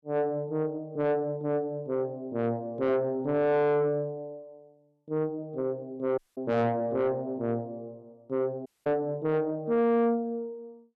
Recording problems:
distortion; soft clipping, signal-to-distortion ratio 7 dB
audio cutting out; at 6 s and at 8.5 s

